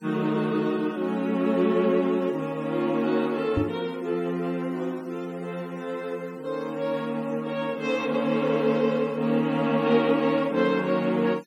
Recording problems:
denoising artefacts; signal-to-artefact ratio 26 dB
knock on the microphone; at 3.5 s; peak +3 dB vs average level

